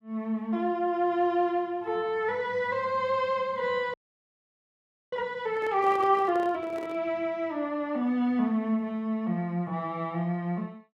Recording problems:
frozen audio; at 4 s for 1 s
handling noise; from 5.5 to 7 s; peak -8 dB vs average level

